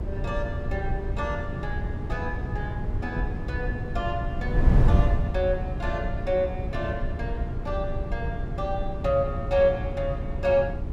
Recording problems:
hum; 60 Hz, harmonics up to 420 Hz, SNR 11 dB
wind noise; below 130 Hz, SNR 0 dB

